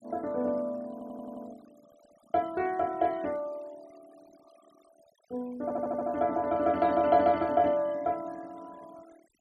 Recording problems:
denoising artefacts; signal-to-artefact ratio 26 dB
stutter; at 1 s and at 5.5 s

